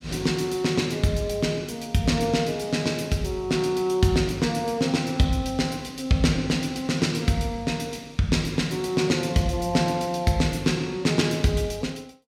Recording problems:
none

